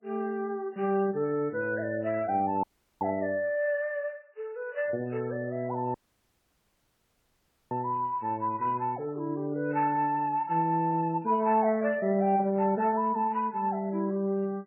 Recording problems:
lossy compression; MP3, log-spectral distance 2 dB, nothing above 2.7 kHz
audio cutting out; at 2.5 s and at 6 s for 2 s

